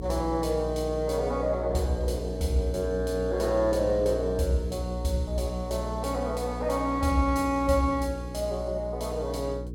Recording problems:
electrical hum; 60 Hz, harmonics up to 480 Hz, SNR 7 dB

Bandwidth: 17 kHz